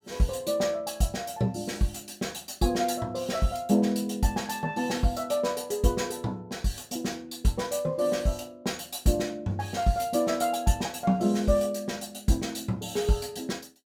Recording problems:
none

